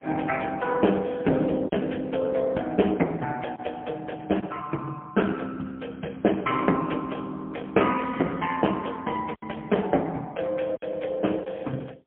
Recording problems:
phone line; 240 Hz to 3.2 kHz, AMR-NB, then MP3
lost packets; 2% of the sound replaced, filled with silence

